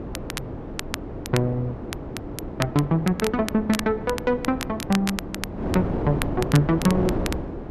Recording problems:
wind on the microphone; below 460 Hz, SNR 7 dB
crackling; vinyl, SNR 11 dB

